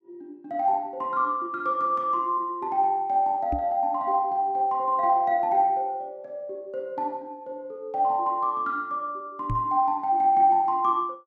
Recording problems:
microphone bump; at 3.5 s and at 9.5 s; peak -2 dB vs average level

